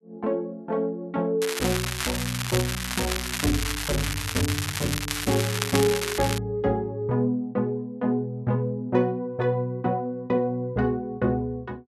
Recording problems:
crackling; from 1.5 to 6.5 s; loose cable, SNR 2 dB

